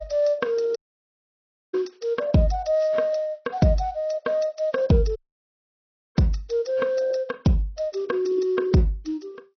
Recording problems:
treble missing; nothing above 6 kHz
lossy codec; AAC, log-spectral distance 3 dB
dropout; at 1 s for 1 s and at 5 s for 1 s

